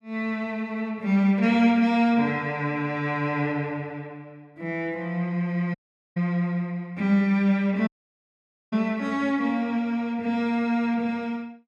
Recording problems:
dropout; at 6 s and at 8 s for 1 s

